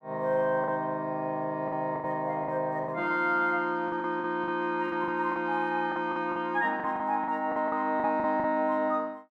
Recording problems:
packet loss; 10% of the sound replaced, filled with the last packet

